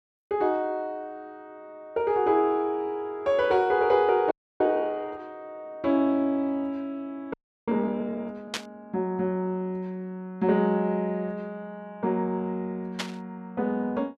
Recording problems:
frozen audio; at 4.5 s and at 7.5 s
burst of static; at 8.5 s and at 13 s; peak +1 dB vs average level

